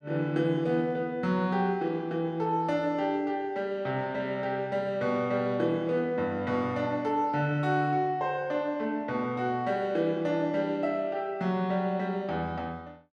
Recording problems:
none

